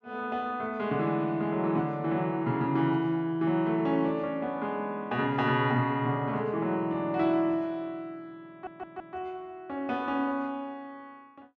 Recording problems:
audio stuttering; at 8.5 s

